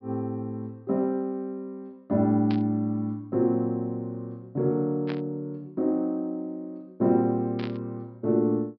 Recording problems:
treble cut off; nothing above 5.5 kHz
burst of static; at 2.5 s, at 5 s and at 7.5 s; peak -7 dB vs average level

